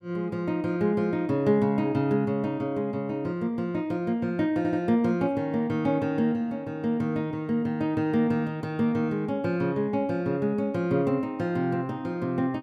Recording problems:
audio stuttering; at 4.5 s

